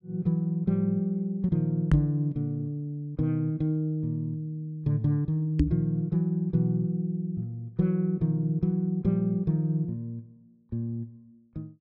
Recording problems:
microphone thump; at 2 s and at 5.5 s; peak +9 dB vs average level

